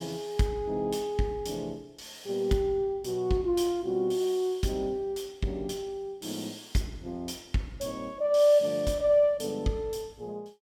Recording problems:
none

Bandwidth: 17.5 kHz